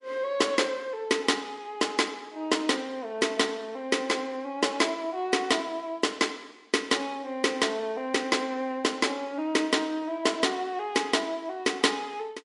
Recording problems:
lossy codec; MP3, log-spectral distance 2 dB, nothing above 11 kHz

